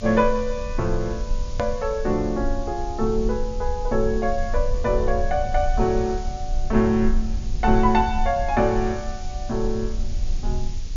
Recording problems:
treble missing; nothing above 7.1 kHz
background hiss; SNR 21 dB
rumble; below 46 Hz, strongest tone 22 Hz, SNR 7 dB
click at an edit; at 1.5 s

